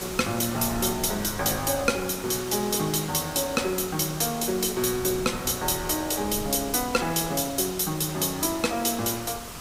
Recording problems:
background hiss; slope -3 dB per octave, SNR 12 dB
wind noise; below 330 Hz, SNR 18 dB

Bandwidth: 15.5 kHz